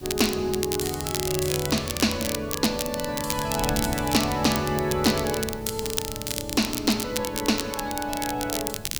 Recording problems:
hiss; SNR 23 dB
wind on the microphone; below 200 Hz, SNR 15 dB
crackle; vinyl, SNR 5 dB

